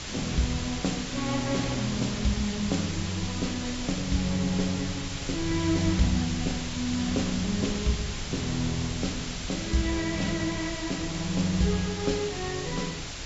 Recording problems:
treble missing; nothing above 7.6 kHz
lossy compression; Vorbis, log-spectral distance 10 dB
hiss; slope 0 dB per octave, SNR 6 dB
low-frequency rumble; below 110 Hz, SNR 13 dB

